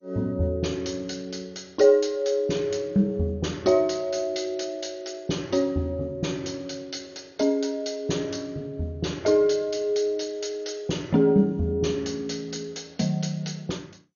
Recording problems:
codec artefacts; MP2, log-spectral distance 5 dB, nothing above 6.7 kHz

